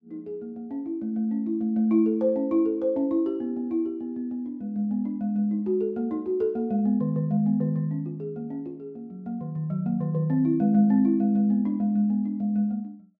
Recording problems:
none

